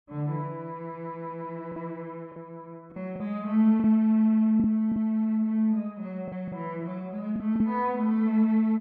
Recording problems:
lost packets; 5% of the sound replaced, filled with the last packet

